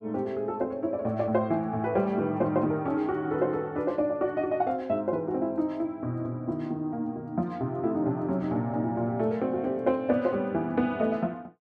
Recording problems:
none

